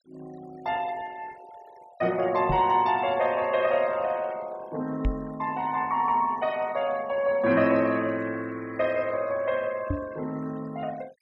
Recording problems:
denoising artefacts; signal-to-artefact ratio 22 dB
microphone bump; at 2.5 s, at 5 s and at 10 s; peak +2 dB vs average level

